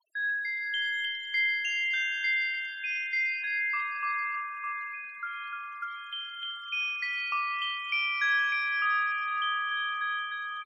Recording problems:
denoising artefacts; signal-to-artefact ratio 23 dB

